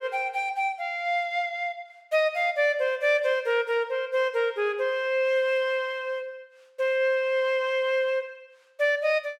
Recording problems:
none

